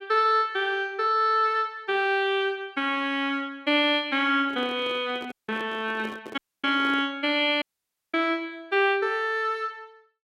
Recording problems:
microphone handling noise; from 4.5 to 7 s; peak -10 dB vs average level
audio cutting out; at 5.5 s, at 6.5 s and at 7.5 s for 0.5 s

